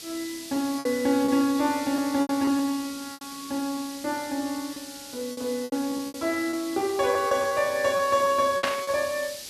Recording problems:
hiss; SNR 12 dB
lost packets; 9% of the sound replaced, filled with repeated pitch periods
static burst; at 8.5 s; peak +3 dB vs average level

